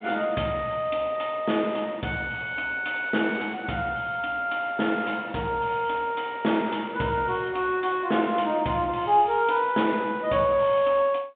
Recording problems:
phone line; 150 Hz to 3.6 kHz, G.726

